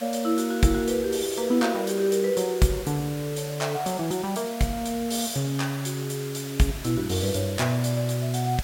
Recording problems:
background hiss; SNR 14 dB

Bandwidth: 16.5 kHz